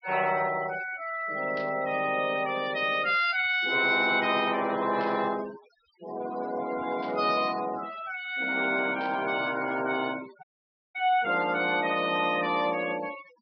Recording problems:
treble cut off; nothing above 5.5 kHz
denoising artefacts; signal-to-artefact ratio 16 dB
static burst; 4 times, first at 1.5 s; peak -14 dB vs average level
audio cutting out; at 10 s for 0.5 s

